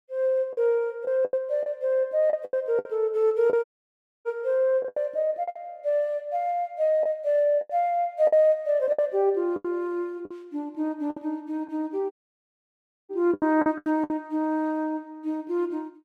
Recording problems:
packet loss; 9% of the sound replaced, filled with the last packet
dropout; at 3.5 s for 0.5 s and at 12 s for 1 s

